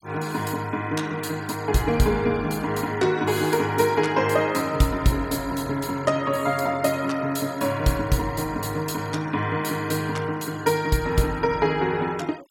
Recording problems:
noise reduction artefacts; signal-to-artefact ratio 22 dB

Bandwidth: 17.5 kHz